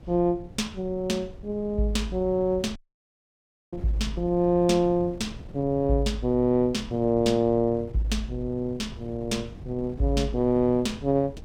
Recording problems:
wind noise; below 180 Hz, SNR 17 dB
dropout; at 3 s for 1 s

